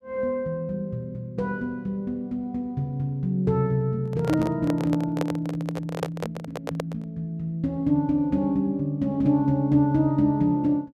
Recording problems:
microphone handling noise; from 4 to 7 s; peak +2 dB vs average level

